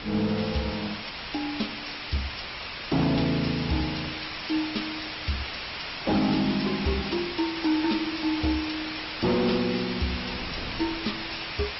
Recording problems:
treble missing; nothing above 5.5 kHz
codec artefacts; Opus, log-spectral distance 9 dB
distortion; hard clipping, signal-to-distortion ratio 12 dB
background hiss; SNR 5 dB
wind noise; below 390 Hz, SNR 20 dB

